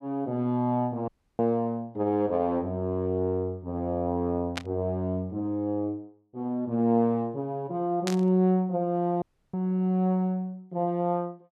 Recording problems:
dropout; at 1 s and at 9 s
burst of static; at 4.5 s and at 8 s; peak 0 dB vs average level

